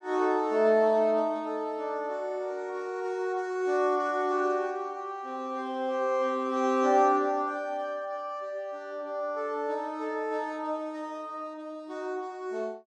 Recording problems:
none

